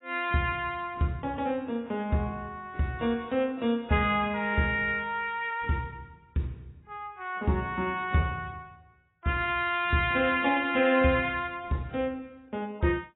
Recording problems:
lossy compression; AAC, log-spectral distance 2 dB, nothing above 3.3 kHz

